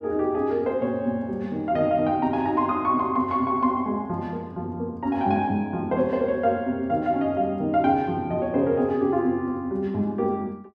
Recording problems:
none

